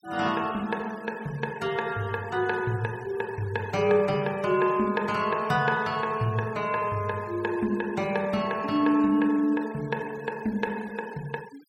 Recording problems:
noise reduction artefacts; signal-to-artefact ratio 22 dB

